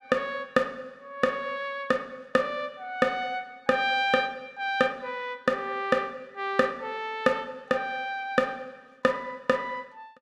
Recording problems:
none

